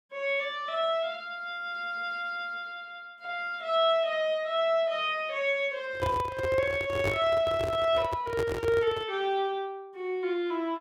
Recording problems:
handling noise; from 6 to 9 s; peak +1 dB vs average level

